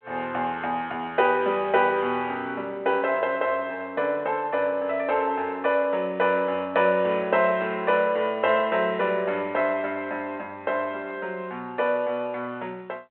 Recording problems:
telephone audio; 260 Hz to 3.4 kHz, G.726

